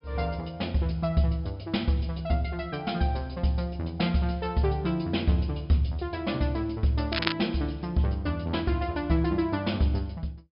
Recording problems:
treble cut off; nothing above 5.5 kHz
crackling; at 7 s; loose cable, SNR 3 dB

